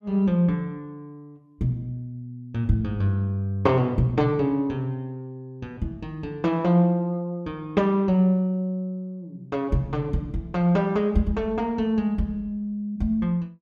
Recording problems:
none

